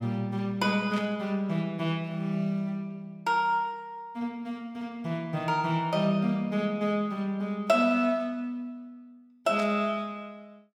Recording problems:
static burst; at 1 s and at 9.5 s; peak -8 dB vs average level

